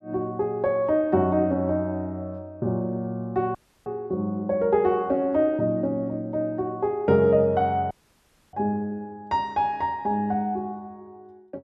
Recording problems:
dropout; at 3.5 s and at 8 s for 0.5 s

